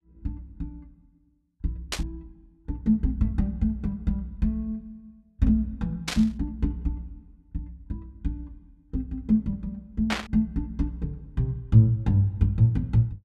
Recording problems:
static burst; at 2 s, at 6 s and at 10 s; peak +3 dB vs average level

